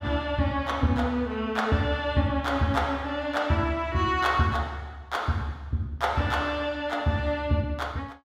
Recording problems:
none

